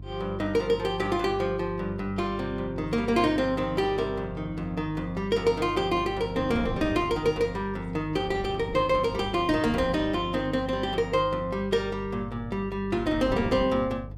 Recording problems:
hum; 50 Hz, harmonics up to 350 Hz, SNR 14 dB
wind on the microphone; below 360 Hz, SNR 13 dB

